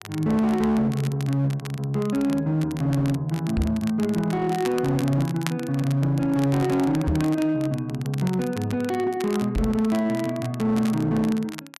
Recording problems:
distorted audio; hard clipping, signal-to-distortion ratio 12 dB
crackling; vinyl, SNR 17 dB
microphone bump; at 3.5 s, at 7 s and at 9.5 s; peak +3 dB vs average level

